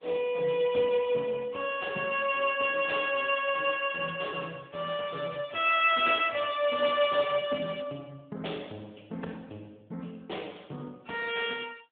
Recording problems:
telephone audio; 280 Hz to 3.4 kHz, AMR-NB

